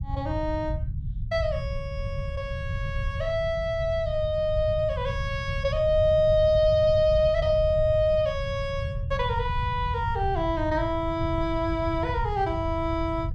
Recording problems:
low-frequency rumble; below 120 Hz, SNR 7 dB

